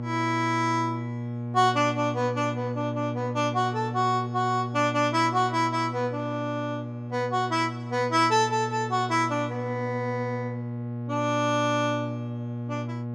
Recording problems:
hum; 60 Hz, harmonics up to 1.1 kHz, SNR 7 dB

